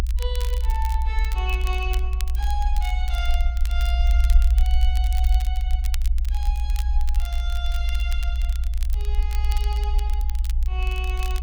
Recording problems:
low-frequency rumble; below 60 Hz, SNR -11 dB
crackle; vinyl, SNR 8 dB

